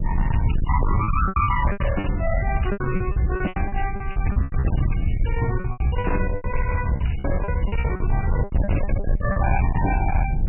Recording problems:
lossy compression; MP3, log-spectral distance 4 dB, nothing above 2.6 kHz
distorted audio; hard clipping, signal-to-distortion ratio 6 dB
low-frequency rumble; below 110 Hz, SNR 0 dB
wind noise; below 98 Hz, SNR 6 dB
lost packets; 16% of the sound replaced, filled with repeated pitch periods

